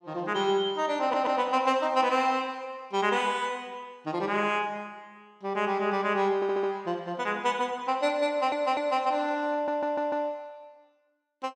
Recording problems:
stutter; 4 times, first at 1 s

